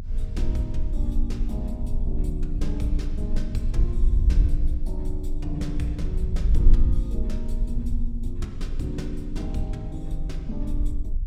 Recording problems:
low-frequency rumble; below 52 Hz, strongest tone 24 Hz, SNR -5 dB

